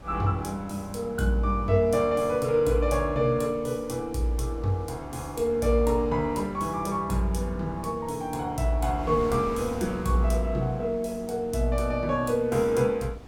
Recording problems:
wind noise; below 530 Hz, SNR 18 dB

